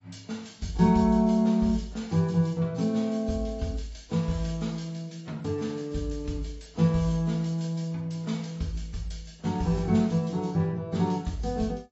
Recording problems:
lossy codec; AAC, log-spectral distance 4 dB, nothing above 7.6 kHz

